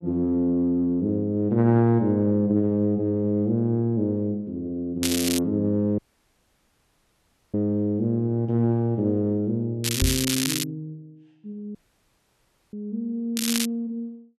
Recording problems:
crackle; at 5 s, at 10 s and at 13 s; loose cable, SNR 3 dB
audio cutting out; at 6 s for 1.5 s and at 12 s for 1 s
microphone bump; at 10 s; peak +3 dB vs average level

